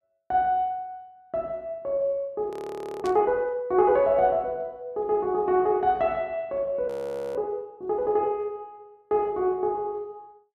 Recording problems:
frozen audio; at 2.5 s for 0.5 s and at 7 s
static burst; at 3 s; peak -11 dB vs average level

